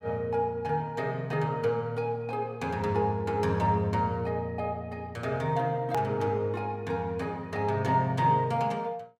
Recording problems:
click at an edit; at 6 s

